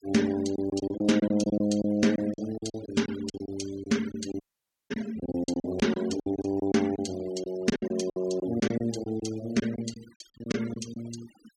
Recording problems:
denoising artefacts; signal-to-artefact ratio 17 dB
lost packets; 13% of the sound replaced, filled with silence
dropout; at 4.5 s for 0.5 s

